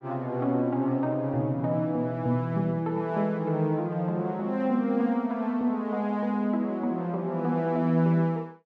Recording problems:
none

